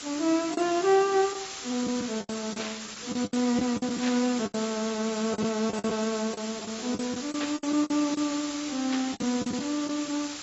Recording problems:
codec artefacts; AAC, log-spectral distance 16 dB, nothing above 7.6 kHz
background hiss; slope +1 dB per octave, SNR 8 dB
packet loss; 11% of the sound replaced, filled with the last packet
burst of static; 4 times, first at 2.5 s; peak -3 dB vs average level

